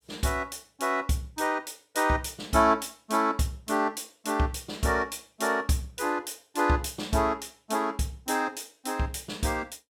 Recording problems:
none

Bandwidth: 17.5 kHz